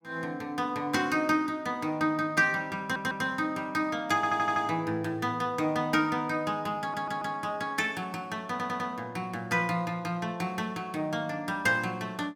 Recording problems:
stutter; 4 times, first at 3 s

